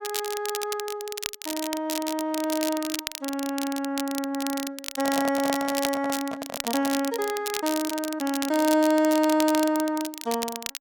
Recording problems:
crackling; vinyl, SNR 7 dB
handling noise; from 5 to 7 s; peak 0 dB vs average level

